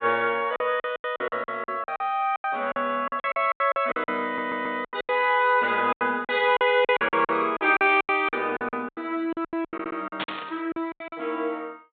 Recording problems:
treble missing; nothing above 4 kHz
lost packets; 19% of the sound replaced, filled with silence
stutter; at 4.5 s and at 9.5 s
burst of static; at 10 s; peak -1 dB vs average level

